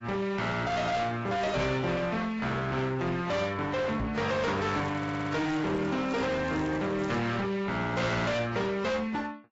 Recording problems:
lossy compression; AAC, log-spectral distance 3 dB, nothing above 7.6 kHz
distorted audio; hard clipping, uneven, signal-to-distortion ratio 6 dB
knock on the microphone; at 1.5 s and at 4 s; peak +1 dB vs average level
crackling; from 4.5 to 7 s; loose cable, SNR 26 dB
audio stuttering; at 5 s

